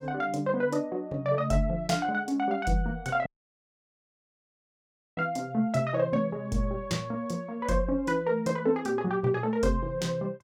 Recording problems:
audio cutting out; at 3.5 s for 2 s

